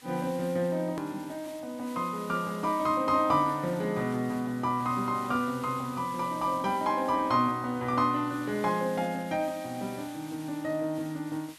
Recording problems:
background hiss; SNR 20 dB
hard cut with a click; at 1 s

